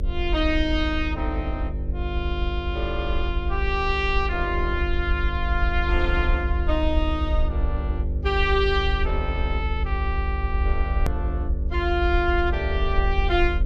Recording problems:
electrical hum; 50 Hz, harmonics up to 600 Hz, SNR 5 dB
rumble; below 70 Hz, SNR 2 dB
hard cut with a click; at 11 s

